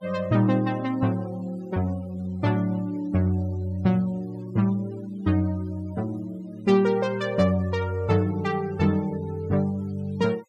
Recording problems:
noise reduction artefacts; signal-to-artefact ratio 25 dB

